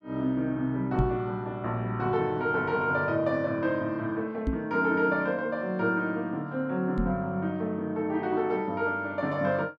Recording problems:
microphone bump; at 1 s, at 4.5 s and at 7 s; peak +4 dB vs average level

